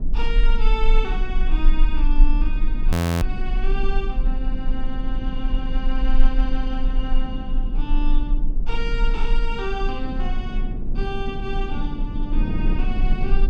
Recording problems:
low-frequency rumble; below 32 Hz, strongest tone 22 Hz, SNR -6 dB
wind on the microphone; below 250 Hz, SNR 2 dB
frozen audio; at 3 s

